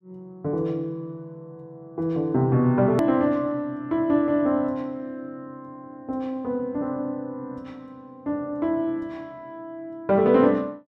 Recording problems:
hard cut with a click; at 3 s

